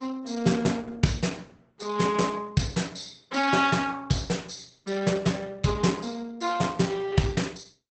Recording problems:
codec artefacts; Opus, log-spectral distance 6 dB, nothing above 8 kHz

